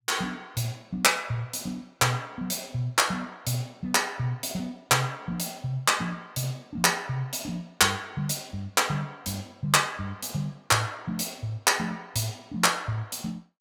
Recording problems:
none

